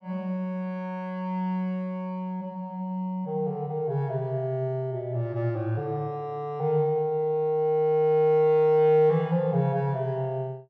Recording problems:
none

